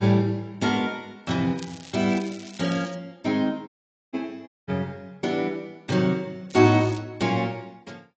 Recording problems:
lossy compression; AAC, log-spectral distance 4 dB, nothing above 7.3 kHz
crackling; from 1.5 to 3 s and at 6.5 s; loose cable, SNR 19 dB
audio cutting out; at 3.5 s and at 4.5 s

